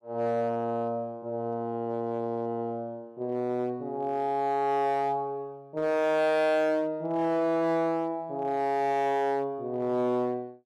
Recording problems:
distortion; hard clipping, signal-to-distortion ratio 7 dB

